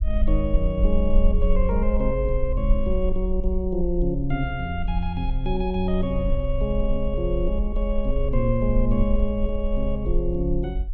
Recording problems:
rumble; below 48 Hz, SNR 1 dB

